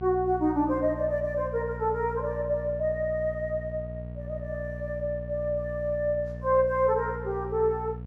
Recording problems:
hum; 60 Hz, harmonics up to 720 Hz, SNR 10 dB

